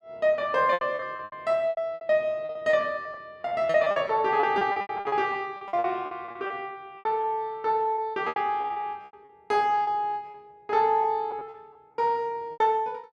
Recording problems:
packet loss; 18% of the sound replaced, filled with repeated pitch periods

